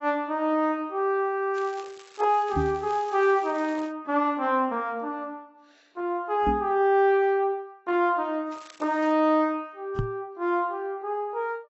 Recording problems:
codec artefacts; AAC, log-spectral distance 2 dB, nothing above 7.1 kHz
crackling; from 1.5 to 4 s and at 8.5 s; loose cable, SNR 24 dB
microphone bump; at 2.5 s, at 6.5 s and at 10 s; peak +2 dB vs average level

